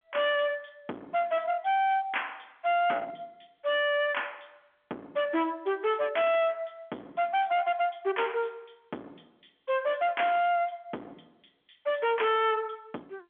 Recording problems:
telephone audio; 220 Hz to 3.5 kHz, G.711
distortion; hard clipping, uneven, signal-to-distortion ratio 6 dB

